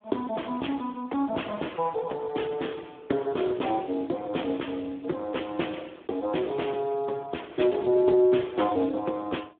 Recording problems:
phone line; 240 Hz to 3.5 kHz, Speex

